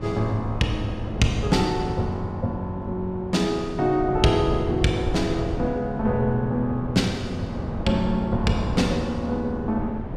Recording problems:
wind on the microphone; below 320 Hz, SNR 8 dB

